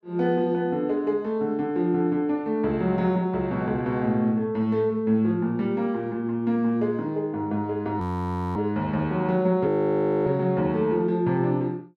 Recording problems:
audio freezing; at 8 s for 0.5 s and at 9.5 s for 0.5 s

